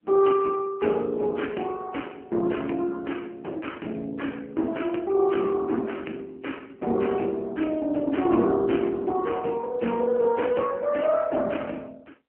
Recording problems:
telephone audio; 190 Hz to 3.1 kHz, AMR-NB

